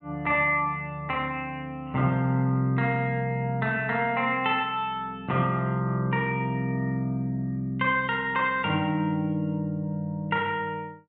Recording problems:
treble cut off; nothing above 4 kHz

